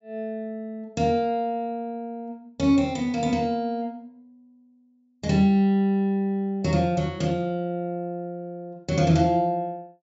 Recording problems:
low-pass filter; nothing above 8 kHz

